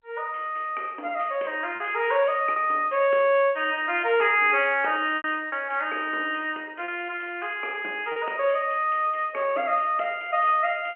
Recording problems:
phone line; 260 Hz to 3.1 kHz, G.711
lost packets; 3% of the sound replaced, filled with repeated pitch periods

